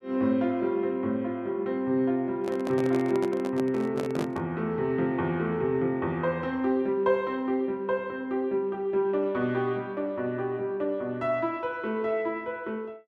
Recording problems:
handling noise; from 2.5 to 4.5 s; peak -2 dB vs average level

